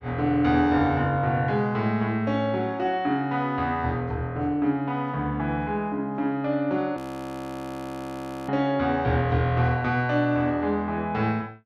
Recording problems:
audio freezing; at 7 s for 1.5 s

